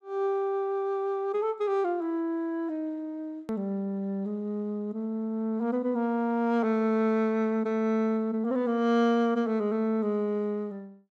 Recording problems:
click at an edit; at 3.5 s

